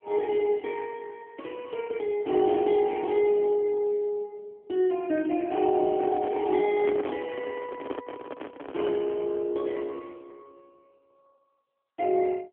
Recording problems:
telephone audio; 240 Hz to 2.9 kHz, AMR-NB
handling noise; from 6 to 9 s; peak -3 dB vs average level

